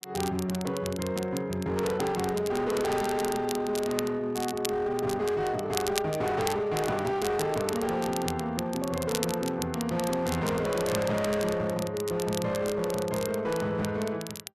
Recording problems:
distorted audio; hard clipping, signal-to-distortion ratio 11 dB
crackling; vinyl, SNR 10 dB

